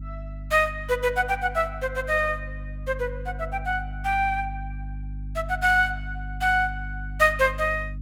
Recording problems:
electrical hum; 50 Hz, harmonics up to 300 Hz, SNR 11 dB

